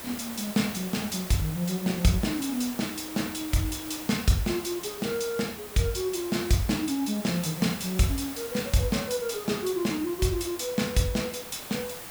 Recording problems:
hiss; slope -3 dB per octave, SNR 10 dB

